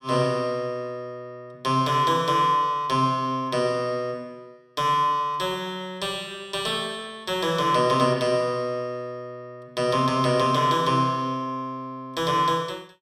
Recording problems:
none

